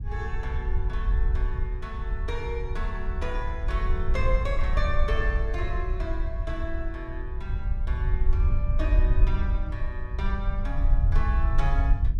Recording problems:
rumble; below 60 Hz, SNR -6 dB

